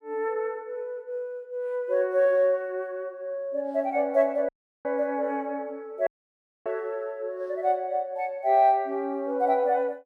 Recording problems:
dropout; at 4.5 s and at 6 s for 0.5 s

